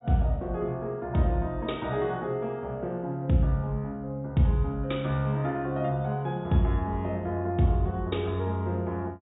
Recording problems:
treble missing; nothing above 4 kHz

